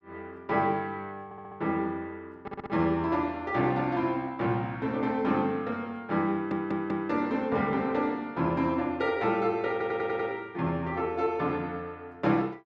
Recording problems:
audio stuttering; 4 times, first at 1.5 s

